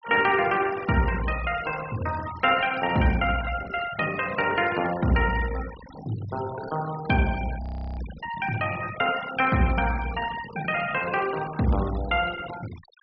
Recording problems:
treble cut off; nothing above 5.5 kHz
denoising artefacts; signal-to-artefact ratio 15 dB
frozen audio; at 7.5 s

